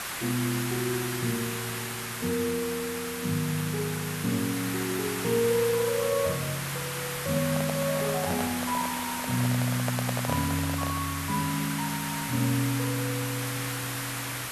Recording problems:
hiss; SNR 3 dB
handling noise; from 7.5 to 11 s; peak 0 dB vs average level

